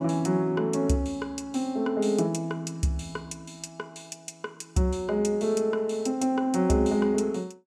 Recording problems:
none

